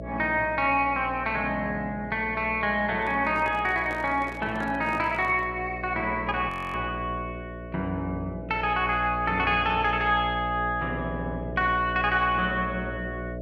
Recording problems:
electrical hum; 60 Hz, harmonics up to 660 Hz, SNR 11 dB
handling noise; from 3 to 5.5 s; peak -9 dB vs average level
frozen audio; at 6.5 s

